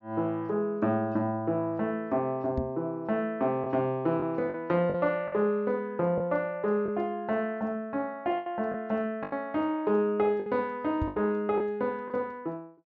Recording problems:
treble missing; nothing above 7 kHz
packet loss; 4% of the sound replaced, filled with the last packet
microphone thump; at 2.5 s and at 11 s; peak +1 dB vs average level

